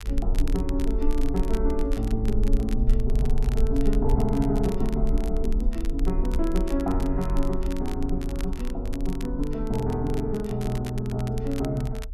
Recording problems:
rumble; below 46 Hz, SNR 2 dB
crackle; vinyl, SNR 18 dB

